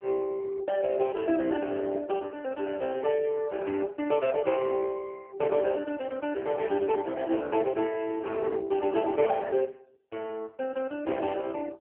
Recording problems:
phone line; 280 Hz to 3.1 kHz, AMR-NB

